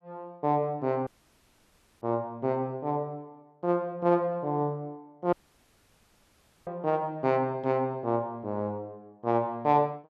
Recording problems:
audio cutting out; at 1 s for 1 s and at 5.5 s for 1.5 s

